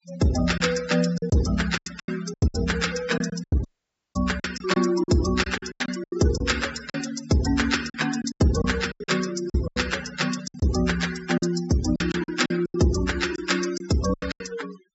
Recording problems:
treble missing; nothing above 8 kHz
denoising artefacts; signal-to-artefact ratio 13 dB
lost packets; 13% of the sound replaced, filled with silence
audio cutting out; at 3.5 s for 0.5 s

